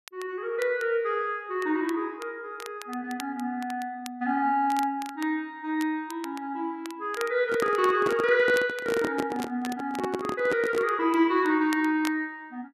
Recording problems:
crackling; vinyl, SNR 18 dB
microphone handling noise; from 7.5 to 11 s; peak +1 dB vs average level

